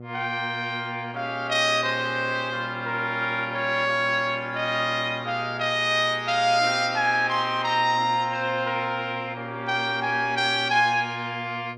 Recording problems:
electrical hum; 60 Hz, harmonics up to 840 Hz, SNR 16 dB

